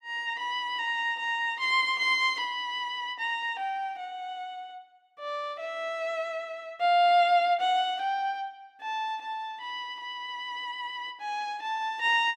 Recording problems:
none

